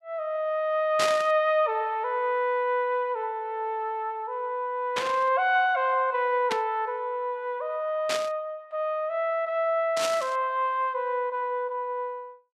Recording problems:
burst of static; 5 times, first at 1 s; peak +2 dB vs average level

